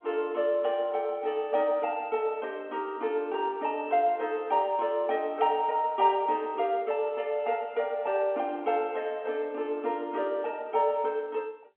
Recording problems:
telephone audio; 240 Hz to 3.5 kHz, G.711

